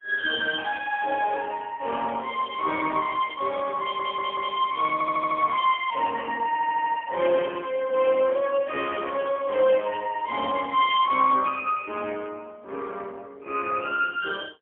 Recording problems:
telephone audio; 300 Hz to 2.8 kHz, AMR-NB, then MP3
stutter; at 4 s, at 5 s and at 6.5 s

